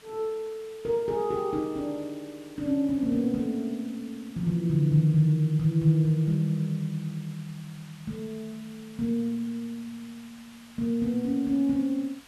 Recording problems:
hiss; SNR 24 dB

